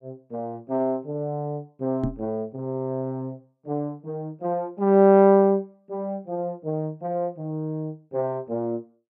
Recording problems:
microphone bump; at 2 s; peak +1 dB vs average level

